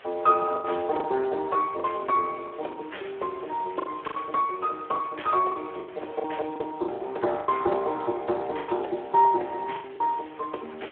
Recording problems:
phone line; 280 Hz to 3.3 kHz, Speex
background hiss; SNR 22 dB
packet loss; 9% of the sound replaced, filled with the last packet

